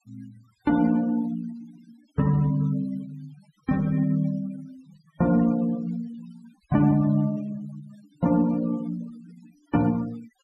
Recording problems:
denoising artefacts; signal-to-artefact ratio 22 dB

